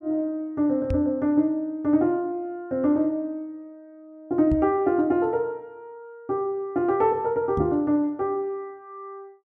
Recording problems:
knock on the microphone; at 1 s, at 4.5 s and at 7.5 s; peak 0 dB vs average level

